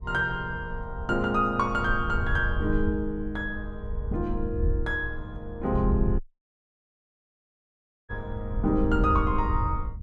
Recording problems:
wind noise; below 78 Hz, SNR 4 dB
audio cutting out; at 6 s for 2 s

